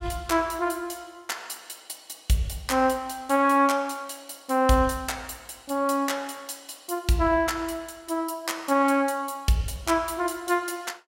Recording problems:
none

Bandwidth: 16 kHz